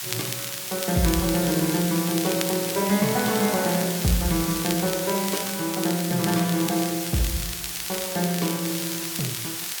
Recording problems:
background hiss; slope +3 dB per octave, SNR 4 dB
crackle; vinyl, SNR 10 dB

